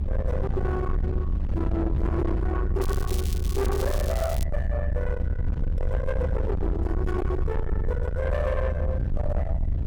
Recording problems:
distorted audio; soft clipping, signal-to-distortion ratio 8 dB
rumble; below 78 Hz, SNR -2 dB
wind noise; below 180 Hz, SNR 4 dB
crackling; from 3 to 4.5 s; loose cable, SNR 11 dB

